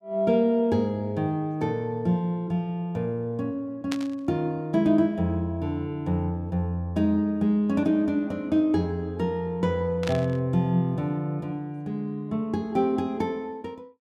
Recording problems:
burst of static; at 4 s and at 10 s; peak -3 dB vs average level

